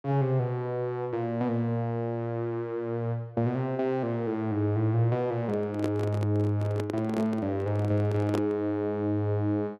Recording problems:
microphone handling noise; from 5.5 to 8.5 s; peak +1 dB vs average level

